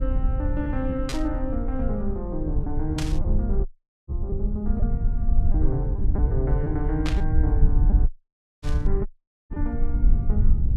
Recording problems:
low-frequency rumble; below 64 Hz, SNR -5 dB
packet loss; 5% of the sound replaced, filled with repeated pitch periods
static burst; 4 times, first at 1 s; peak +4 dB vs average level
dropout; at 3.5 s, at 8 s for 0.5 s and at 9 s

